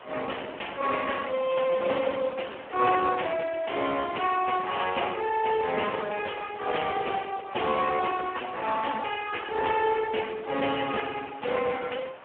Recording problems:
phone line; 300 Hz to 3.2 kHz, Speex
hiss; SNR 18 dB

